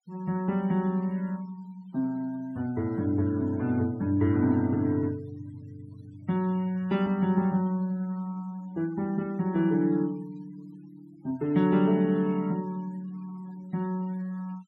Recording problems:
noise reduction artefacts; signal-to-artefact ratio 26 dB

